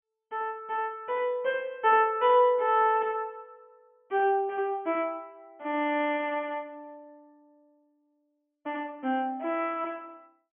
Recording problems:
low-pass filter; nothing above 3.3 kHz

